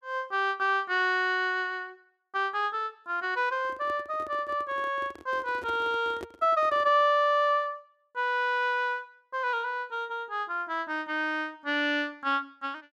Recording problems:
handling noise; from 3.5 to 7 s; peak -7 dB vs average level

